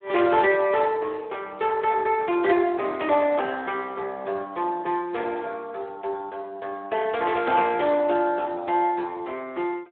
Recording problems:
telephone audio; 300 Hz to 3.5 kHz, Speex

